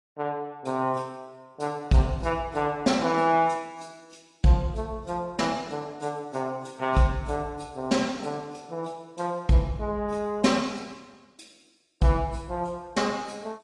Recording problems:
codec artefacts; AAC, log-spectral distance 3 dB, nothing above 10.1 kHz

